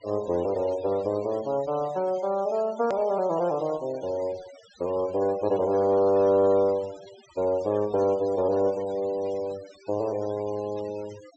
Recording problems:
low-pass filter; nothing above 8 kHz
denoising artefacts; signal-to-artefact ratio 22 dB
click at an edit; at 3 s

